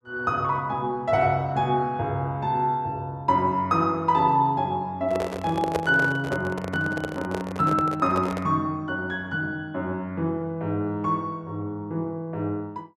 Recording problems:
microphone handling noise; from 5 to 8.5 s; peak +3 dB vs average level

